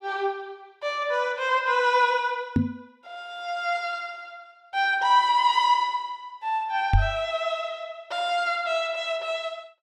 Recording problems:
microphone thump; at 2.5 s and at 7 s; peak +7 dB vs average level

